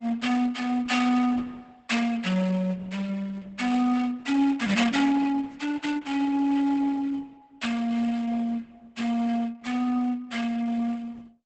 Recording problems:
lossy compression; Opus, log-spectral distance 3 dB, nothing above 8 kHz

